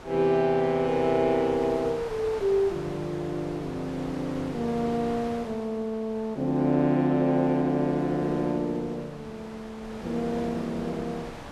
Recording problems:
wind noise; below 1.5 kHz, SNR 15 dB

